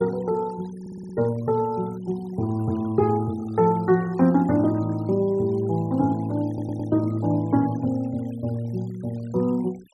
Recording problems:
denoising artefacts; signal-to-artefact ratio 25 dB
audio stuttering; at 1 s and at 6.5 s

